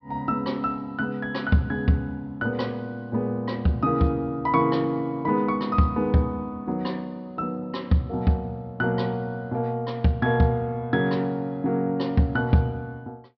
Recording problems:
low-pass filter; nothing above 5.5 kHz

